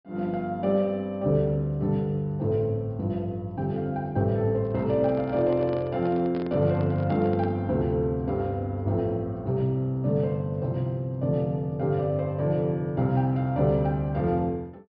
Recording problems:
low-pass filter; nothing above 5.5 kHz
microphone handling noise; from 4.5 to 7.5 s; peak -8 dB vs average level

